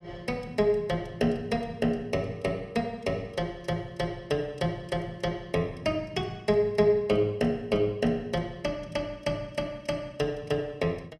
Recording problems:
none

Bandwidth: 14.5 kHz